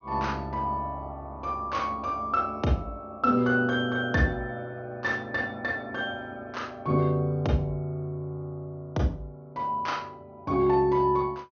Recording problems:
treble cut off; nothing above 6.5 kHz

